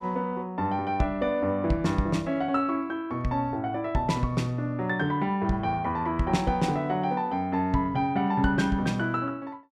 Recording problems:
none

